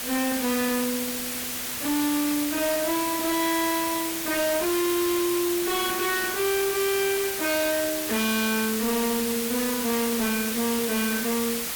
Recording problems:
distorted audio; hard clipping, signal-to-distortion ratio 8 dB
hiss; slope 0 dB per octave, SNR 2 dB

